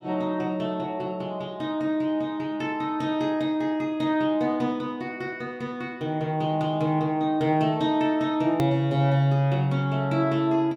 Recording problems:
edit click; at 8.5 s

